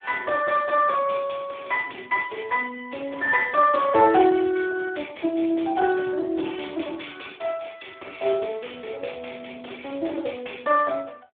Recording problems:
phone line; 280 Hz to 3 kHz, Speex

